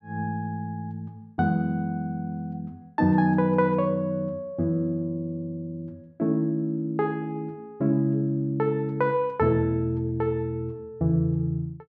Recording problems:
none

